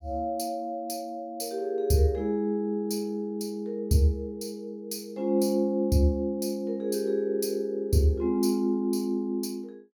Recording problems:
none

